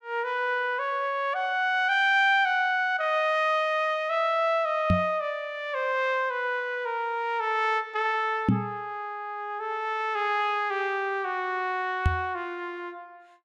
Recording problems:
microphone thump; at 5 s, at 8.5 s and at 12 s; peak +7 dB vs average level

